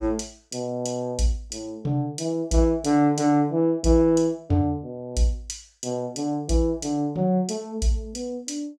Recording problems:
none

